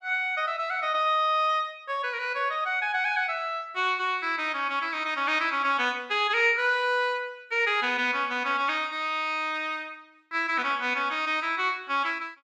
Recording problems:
none

